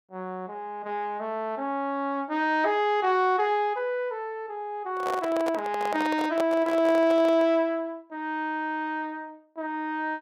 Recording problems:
microphone handling noise; from 5 to 7.5 s; peak -1 dB vs average level

